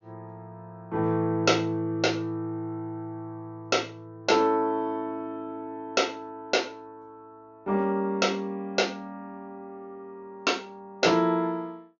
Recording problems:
low-pass filter; nothing above 7.1 kHz

